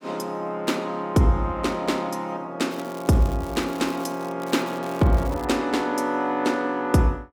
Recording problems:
crackling; from 2.5 to 4.5 s and from 4.5 to 5.5 s; loose cable, SNR 21 dB

